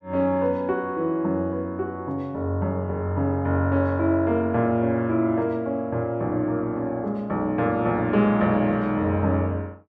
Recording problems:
none

